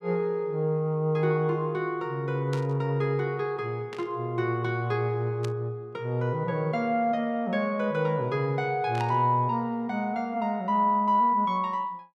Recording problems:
burst of static; 4 times, first at 2.5 s; peak -8 dB vs average level

